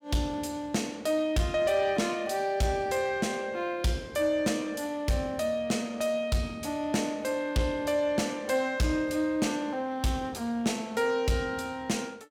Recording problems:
distorted audio; soft clipping, signal-to-distortion ratio 11 dB

